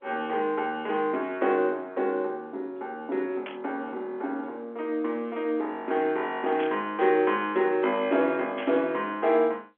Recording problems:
phone line; 240 Hz to 3.6 kHz, G.711
static burst; at 3.5 s, at 6.5 s and at 8.5 s; peak -7 dB vs average level

